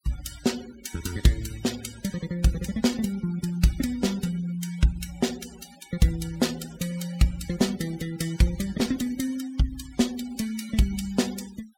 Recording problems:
noise reduction artefacts; signal-to-artefact ratio 16 dB

